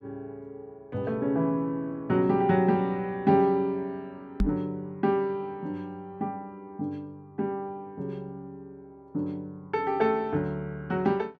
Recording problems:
microphone bump; at 4.5 s; peak +5 dB vs average level

